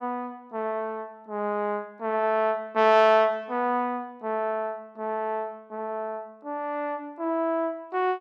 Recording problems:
none

